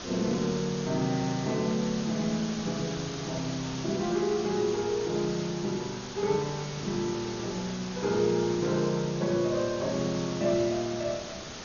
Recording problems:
codec artefacts; MP2, log-spectral distance 15 dB
hiss; slope -2 dB per octave, SNR 9 dB

